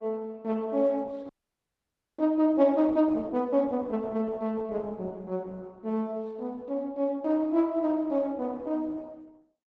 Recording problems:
codec artefacts; Opus, log-spectral distance 2 dB
frozen audio; at 1.5 s for 1 s

